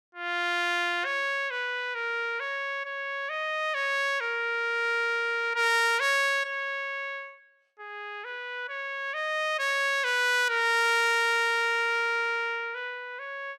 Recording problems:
none

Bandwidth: 16 kHz